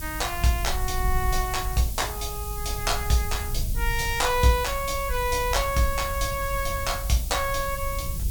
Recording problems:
hiss; SNR 9 dB
rumble; below 70 Hz, SNR 7 dB

